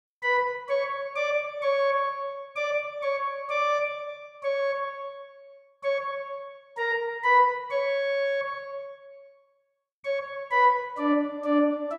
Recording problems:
none

